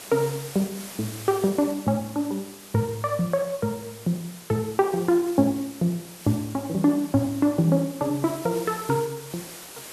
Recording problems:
hiss; slope -2 dB per octave, SNR 15 dB

